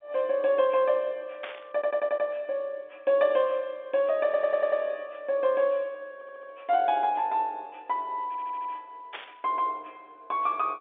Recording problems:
phone line; 320 Hz to 3.6 kHz, G.711
burst of static; at 1.5 s and at 9 s; peak -6 dB vs average level
stutter; 4 times, first at 1.5 s

